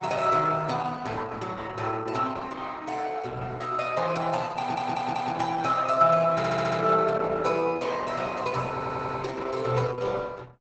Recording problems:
lossy compression; Opus, log-spectral distance 4 dB, nothing above 8 kHz
stutter; at 4.5 s, at 6.5 s and at 8.5 s

